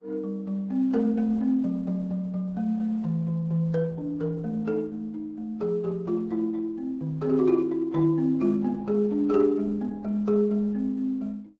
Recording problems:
codec artefacts; Vorbis, then Opus, log-spectral distance 2 dB, nothing above 7.6 kHz

